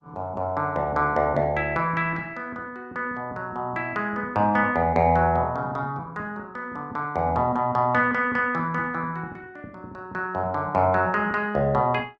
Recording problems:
codec artefacts; Opus, log-spectral distance 2 dB

